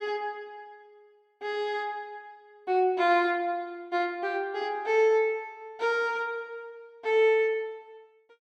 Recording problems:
none

